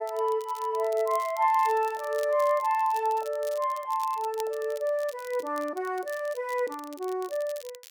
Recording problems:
crackling; vinyl, SNR 20 dB

